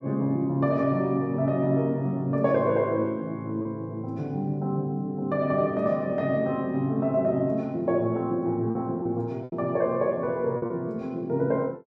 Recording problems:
lost packets; 2% of the sound replaced, filled with repeated pitch periods

